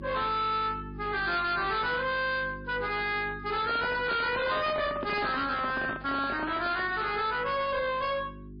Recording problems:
lossy compression; MP3, log-spectral distance 4 dB, nothing above 4.5 kHz
distorted audio; hard clipping, uneven, signal-to-distortion ratio 7 dB
hum; 50 Hz, harmonics up to 400 Hz, SNR 16 dB
handling noise; from 3.5 to 7 s; peak -2 dB vs average level

